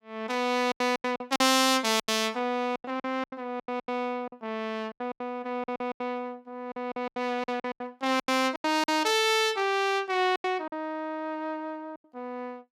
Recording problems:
lost packets; 14% of the sound replaced, filled with silence

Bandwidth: 16.5 kHz